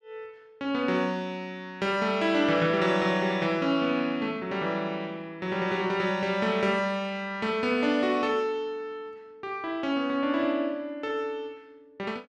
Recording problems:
none

